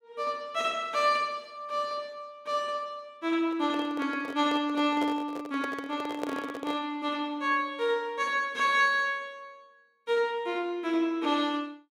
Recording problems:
handling noise; from 3.5 to 7 s; peak -2 dB vs average level

